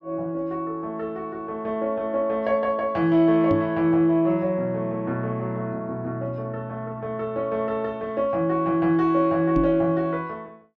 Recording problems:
knock on the microphone; at 3.5 s and at 9.5 s; peak +1 dB vs average level

